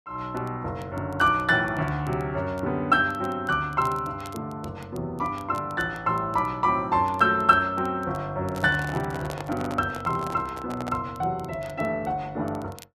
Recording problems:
crackling; vinyl, SNR 27 dB
handling noise; from 8.5 to 11 s; peak -5 dB vs average level

